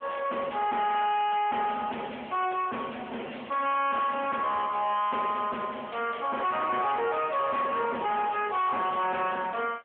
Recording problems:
phone line; 390 Hz to 3.2 kHz, AMR-NB
distorted audio; soft clipping, signal-to-distortion ratio 6 dB

